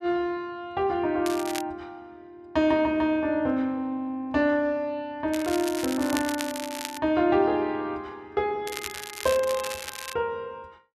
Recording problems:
crackle; at 1.5 s, from 5.5 to 7 s and from 8.5 to 10 s; loose cable, SNR 9 dB

